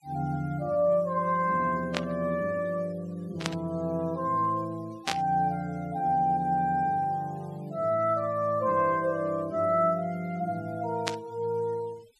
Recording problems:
denoising artefacts; signal-to-artefact ratio 27 dB
burst of static; 4 times, first at 2 s; peak +3 dB vs average level

